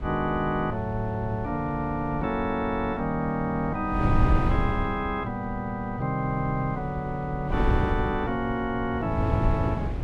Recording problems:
wind on the microphone; below 140 Hz, SNR 4 dB

